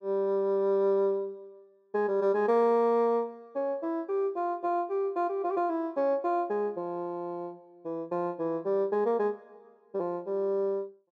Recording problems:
none

